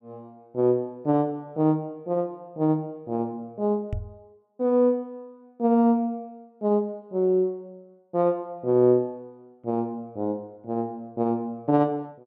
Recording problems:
microphone bump; at 4 s; peak -2 dB vs average level

